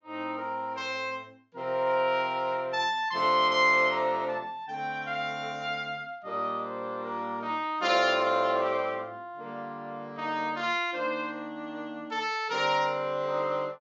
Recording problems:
treble cut off; nothing above 7.6 kHz

